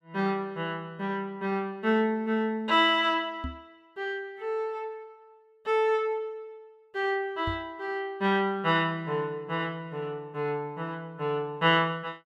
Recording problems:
microphone thump; at 3.5 s and at 7.5 s; peak -3 dB vs average level

